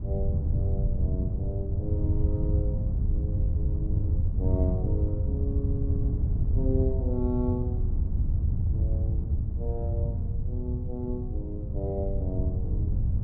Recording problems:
wind on the microphone; below 100 Hz, SNR -8 dB

